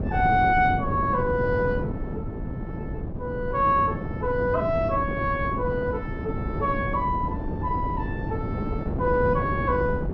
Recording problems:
wind noise; below 300 Hz, SNR 5 dB

